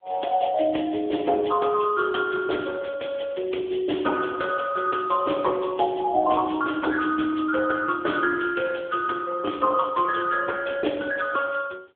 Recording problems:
telephone audio; 260 Hz to 2 kHz, AMR-NB

